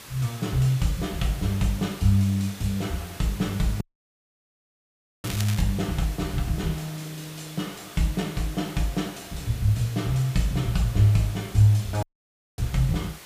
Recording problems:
hiss; slope -1 dB per octave, SNR 16 dB
dropout; at 4 s for 1.5 s and at 12 s for 0.5 s
crackling; at 5 s; loose cable, SNR 11 dB

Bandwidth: 15 kHz